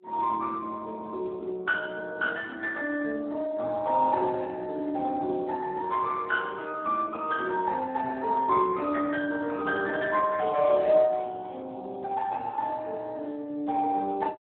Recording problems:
phone line; 260 Hz to 3 kHz, Speex

